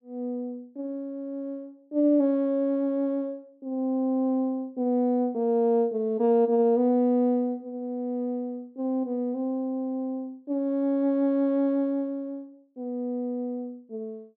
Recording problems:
none

